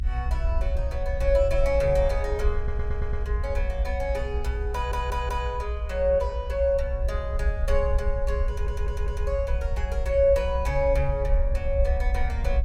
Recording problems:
low-frequency rumble; below 64 Hz, SNR 1 dB
stutter; at 2.5 s, at 4.5 s and at 8.5 s

